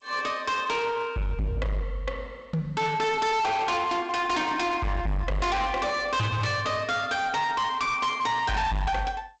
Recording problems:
lossy codec; G.722, log-spectral distance 2 dB, nothing above 7.6 kHz
distortion; hard clipping, uneven, signal-to-distortion ratio 7 dB

